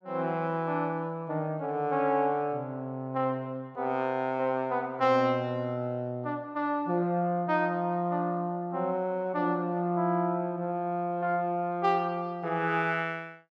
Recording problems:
none

